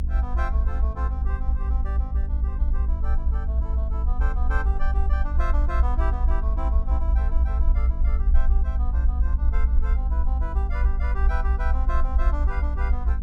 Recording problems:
mains hum; 50 Hz, harmonics up to 550 Hz, SNR 4 dB
low-frequency rumble; below 62 Hz, SNR -12 dB

